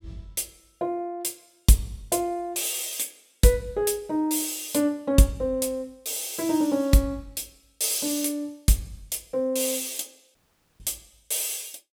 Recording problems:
dropout; at 10 s

